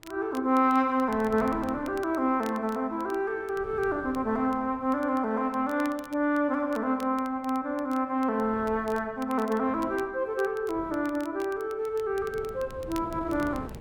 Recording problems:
wind noise; below 420 Hz, SNR 19 dB
crackle; vinyl, SNR 24 dB

